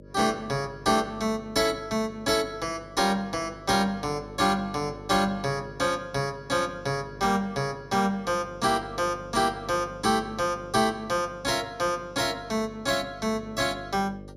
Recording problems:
electrical hum; 50 Hz, harmonics up to 600 Hz, SNR 18 dB

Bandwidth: 15 kHz